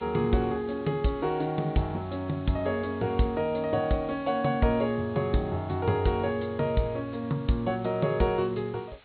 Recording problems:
treble cut off; nothing above 4.2 kHz
hiss; SNR 27 dB

